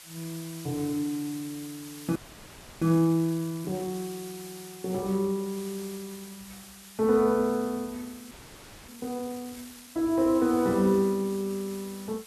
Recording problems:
hiss; slope +2 dB per octave, SNR 17 dB
audio freezing; at 2 s for 0.5 s and at 8.5 s for 0.5 s

